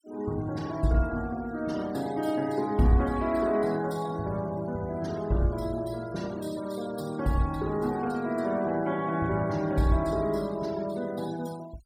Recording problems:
denoising artefacts; signal-to-artefact ratio 21 dB

